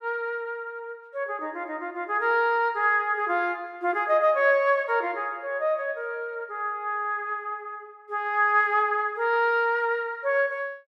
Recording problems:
none

